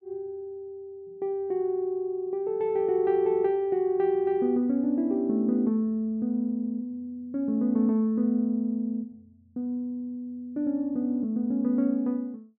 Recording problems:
none

